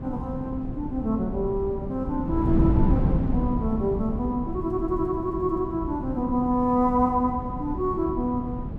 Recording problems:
wind noise; below 210 Hz, SNR 4 dB

